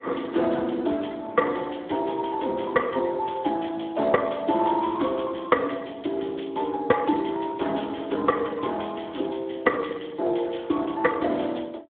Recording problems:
telephone audio; 220 Hz to 2 kHz, Speex

